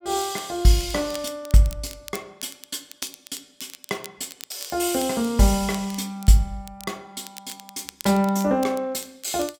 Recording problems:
crackle; vinyl, SNR 18 dB

